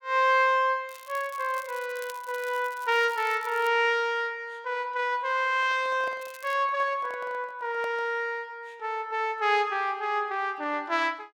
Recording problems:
crackling; from 1 to 3.5 s and at 6 s; loose cable, SNR 22 dB
handling noise; from 5.5 to 8 s; peak -10 dB vs average level

